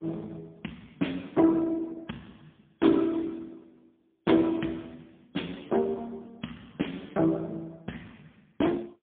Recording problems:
phone line; 130 Hz to 3.5 kHz, AMR-NB, then MP3

